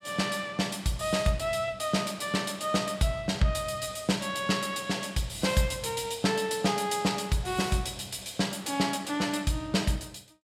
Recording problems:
none

